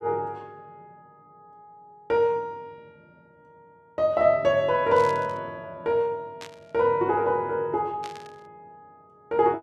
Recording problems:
static burst; at 5 s, at 6.5 s and at 8 s; peak -12 dB vs average level

